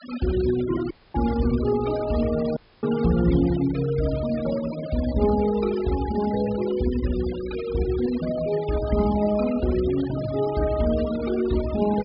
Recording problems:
low-pass filter; nothing above 5.5 kHz
denoising artefacts; signal-to-artefact ratio 16 dB
audio cutting out; at 1 s and at 2.5 s

